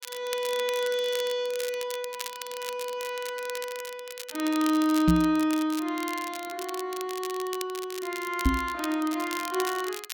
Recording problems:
crackle; vinyl, SNR 10 dB
microphone bump; at 5 s and at 8.5 s; peak +9 dB vs average level

